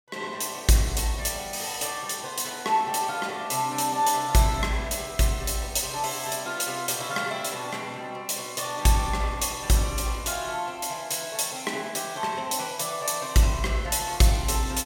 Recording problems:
none

